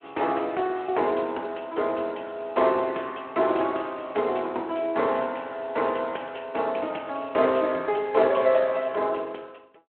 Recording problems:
phone line; 280 Hz to 3.8 kHz, Speex

